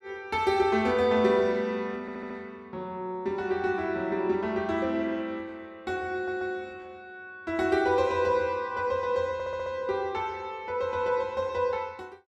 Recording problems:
audio stuttering; at 2 s, at 6 s and at 9.5 s

